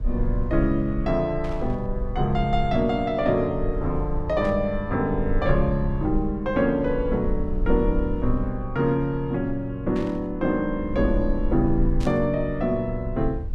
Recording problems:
rumble; below 54 Hz, SNR 8 dB
static burst; 4 times, first at 1.5 s; peak -12 dB vs average level

